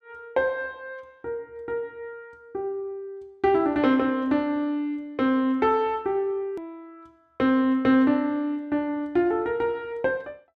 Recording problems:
hard cut with a click; at 6.5 s

